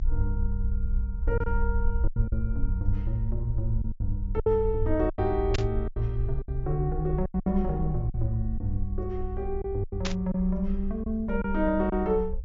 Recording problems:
treble cut off; nothing above 7.3 kHz
low-frequency rumble; below 60 Hz, SNR 3 dB
packet loss; 8% of the sound replaced, filled with silence
burst of static; at 5.5 s and at 10 s; peak +2 dB vs average level

